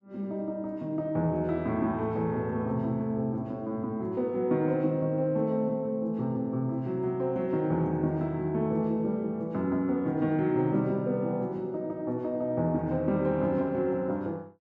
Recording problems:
none

